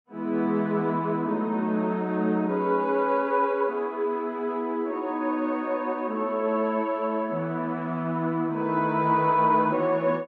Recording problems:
none

